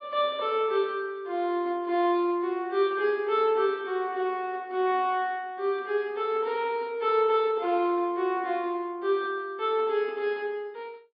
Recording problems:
treble missing; nothing above 5 kHz

